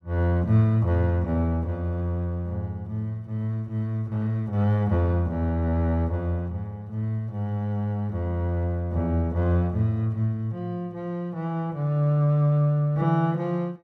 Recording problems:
none

